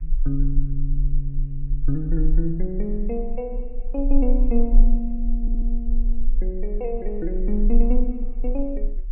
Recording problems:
background hiss; SNR 45 dB
rumble; below 32 Hz, strongest tone 22 Hz, SNR -2 dB
audio stuttering; at 5.5 s

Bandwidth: 3 kHz